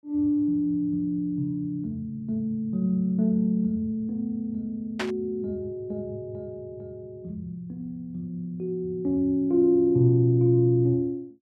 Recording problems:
static burst; at 5 s; peak -1 dB vs average level

